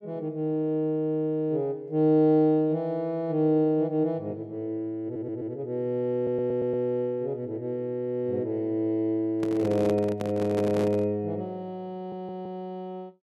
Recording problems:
stutter; at 5 s, at 6 s and at 12 s
handling noise; from 9.5 to 11 s; peak -3 dB vs average level

